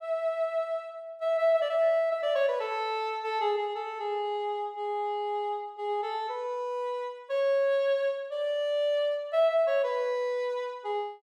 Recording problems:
none

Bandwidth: 15 kHz